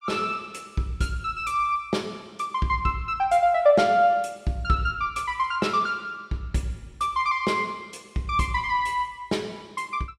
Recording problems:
none

